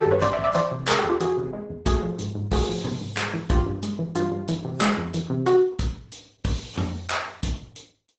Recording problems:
lossy codec; AAC, then Opus, log-spectral distance 5 dB, nothing above 8 kHz

